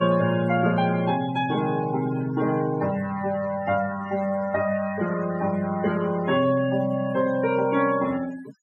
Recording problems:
noise reduction artefacts; signal-to-artefact ratio 16 dB

